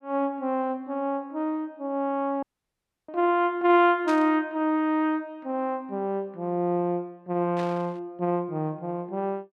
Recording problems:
dropout; at 2.5 s for 0.5 s
static burst; at 4 s and at 7.5 s; peak -8 dB vs average level

